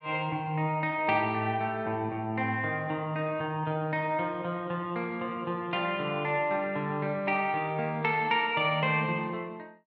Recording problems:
none

